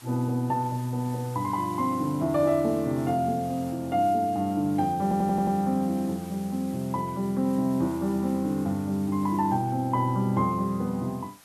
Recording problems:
hiss; SNR 22 dB
audio stuttering; at 5 s

